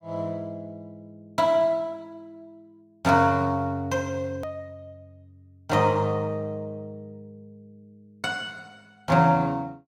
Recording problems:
edit click; at 4.5 s

